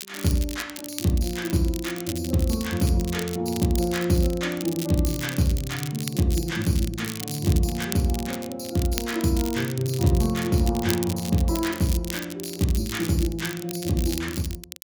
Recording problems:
crackling; vinyl, SNR 11 dB

